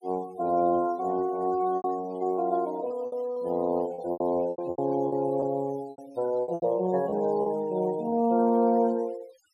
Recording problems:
denoising artefacts; signal-to-artefact ratio 23 dB
packet loss; 9% of the sound replaced, filled with repeated pitch periods

